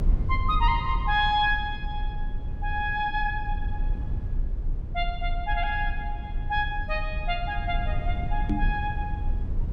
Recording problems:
low-frequency rumble; below 68 Hz, strongest tone 30 Hz, SNR 3 dB
knock on the microphone; at 8.5 s; peak +4 dB vs average level

